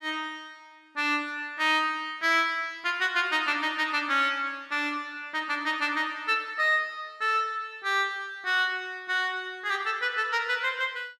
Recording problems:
none

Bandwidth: 13.5 kHz